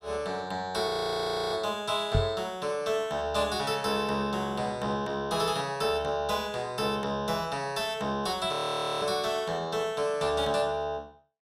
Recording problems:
audio freezing; at 1 s for 0.5 s and at 8.5 s
microphone bump; at 2 s; peak +6 dB vs average level

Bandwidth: 14.5 kHz